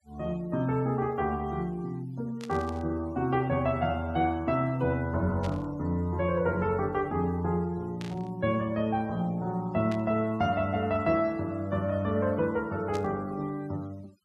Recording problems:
noise reduction artefacts; signal-to-artefact ratio 27 dB
burst of static; 5 times, first at 2.5 s; peak -10 dB vs average level

